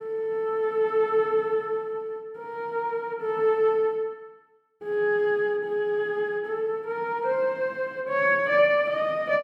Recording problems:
none

